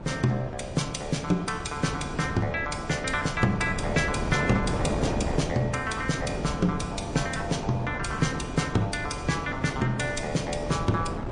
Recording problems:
lossy codec; MP3, log-spectral distance 3 dB, nothing above 9.5 kHz
wind on the microphone; below 510 Hz, SNR 6 dB

